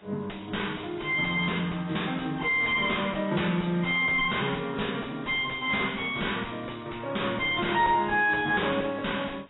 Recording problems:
lossy codec; AAC, log-spectral distance 10 dB, nothing above 3.4 kHz
distortion; soft clipping, signal-to-distortion ratio 6 dB
hiss; SNR 28 dB

